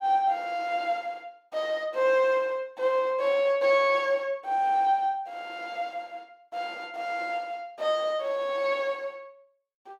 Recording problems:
none

